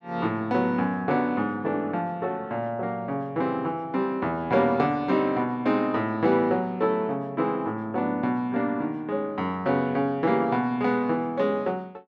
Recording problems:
none

